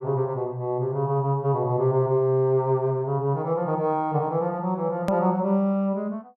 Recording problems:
click at an edit; at 5 s

